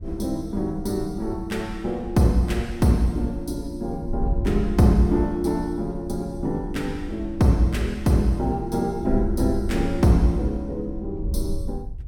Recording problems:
wind noise; below 70 Hz, SNR 10 dB

